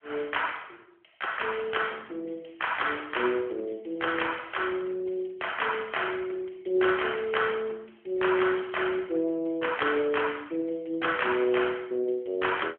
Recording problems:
phone line; 300 Hz to 3.3 kHz, AMR-NB

